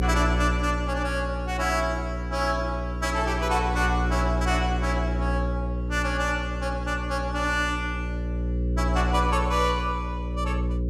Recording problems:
hum; 60 Hz, harmonics up to 540 Hz, SNR 1 dB

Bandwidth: 15.5 kHz